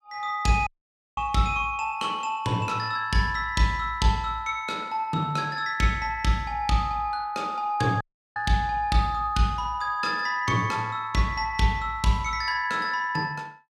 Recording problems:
audio cutting out; at 0.5 s and at 8 s

